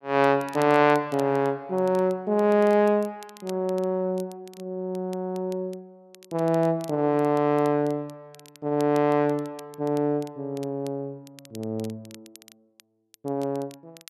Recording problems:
crackle; vinyl, SNR 26 dB

